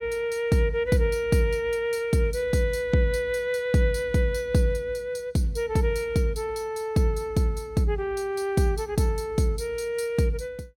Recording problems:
none

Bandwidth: 17 kHz